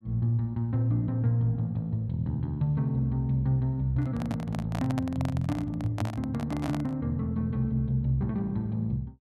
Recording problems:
microphone handling noise; from 4 to 7 s; peak -3 dB vs average level

